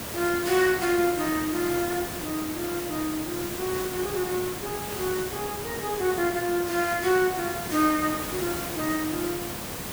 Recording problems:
background hiss; slope -4 dB per octave, SNR 5 dB

